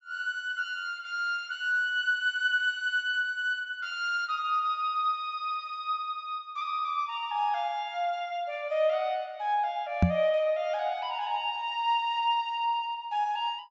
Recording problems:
treble missing; nothing above 8 kHz
knock on the microphone; at 10 s; peak +9 dB vs average level

